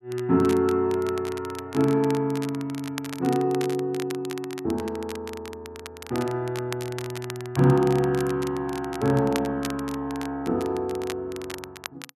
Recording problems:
crackle; vinyl, SNR 15 dB

